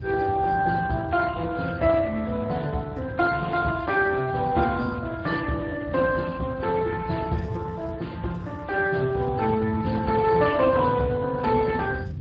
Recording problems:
lossy codec; MP3, then Speex, log-spectral distance 3 dB
wind on the microphone; below 160 Hz, SNR 11 dB

